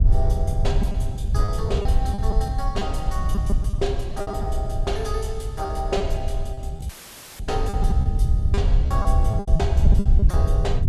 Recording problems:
low-frequency rumble; below 80 Hz, SNR -7 dB
packet loss; 10% of the sound replaced, filled with repeated pitch periods
audio cutting out; at 7 s for 0.5 s; filled with static

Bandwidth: 13.5 kHz